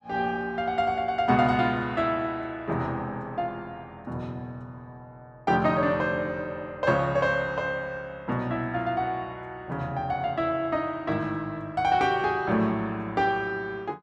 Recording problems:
none

